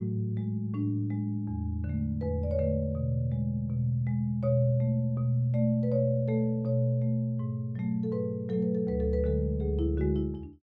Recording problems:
none

